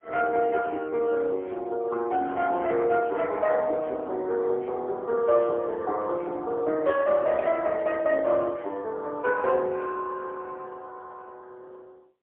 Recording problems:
telephone audio; 320 Hz to 3.4 kHz, AMR-NB, then MP3

